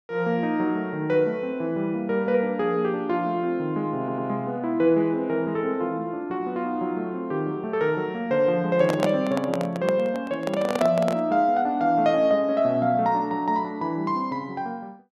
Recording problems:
audio stuttering; at 4 s
microphone handling noise; from 8.5 to 11 s; peak +3 dB vs average level

